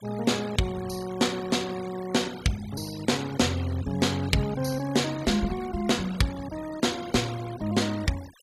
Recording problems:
noise reduction artefacts; signal-to-artefact ratio 17 dB

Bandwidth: 15.5 kHz